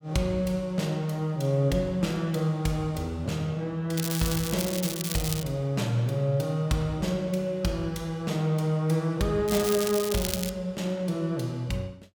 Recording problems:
crackle; from 4 to 5.5 s and from 9.5 to 11 s; loose cable, SNR 5 dB

